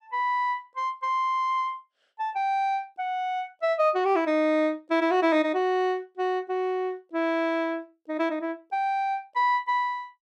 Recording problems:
none

